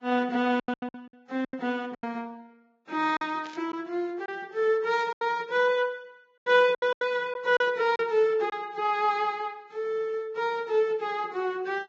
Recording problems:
lossy compression; Vorbis, log-spectral distance 2 dB
packet loss; 7% of the sound replaced, filled with silence
burst of static; at 3.5 s and at 5 s; peak -13 dB vs average level

